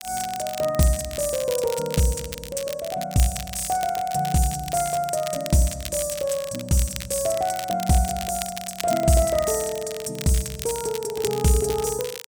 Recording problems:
crackling; vinyl, SNR 11 dB

